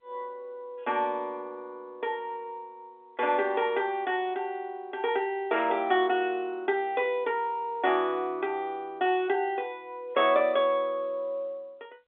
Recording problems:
telephone audio; 300 Hz to 3.6 kHz, G.711

